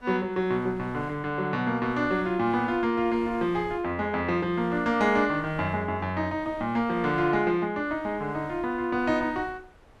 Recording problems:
wind noise; below 1 kHz, SNR 23 dB

